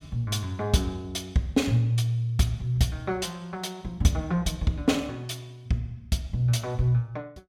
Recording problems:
none

